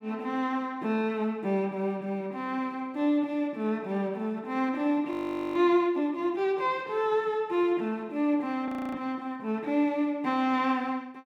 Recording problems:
audio freezing; at 5 s and at 8.5 s

